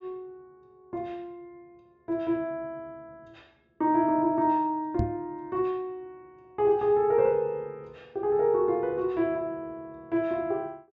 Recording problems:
low-pass filter; nothing above 8 kHz
knock on the microphone; at 5 s; peak +2 dB vs average level

